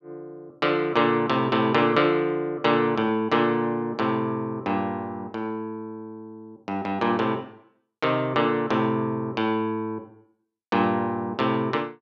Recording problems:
none

